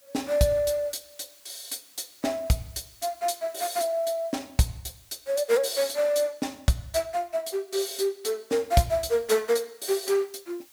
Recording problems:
hiss; slope +2 dB per octave, SNR 26 dB

